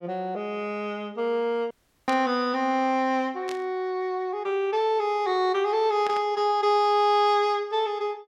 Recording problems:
dropout; at 1.5 s
static burst; at 2 s, at 3.5 s and at 6 s; peak -8 dB vs average level

